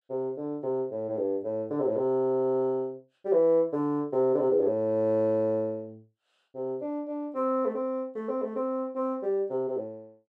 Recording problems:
none

